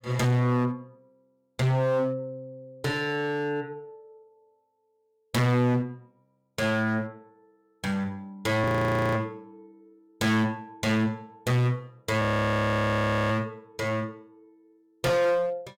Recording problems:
distorted audio; hard clipping, uneven, signal-to-distortion ratio 4 dB
audio freezing; at 8.5 s for 0.5 s and at 12 s for 1 s

